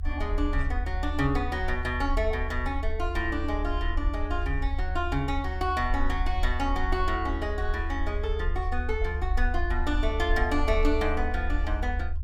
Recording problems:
rumble; below 74 Hz, SNR 1 dB

